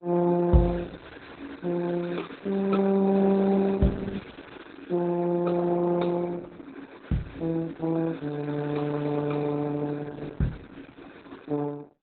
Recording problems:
lossy codec; Opus, then Opus, log-spectral distance 4 dB, nothing above 4 kHz

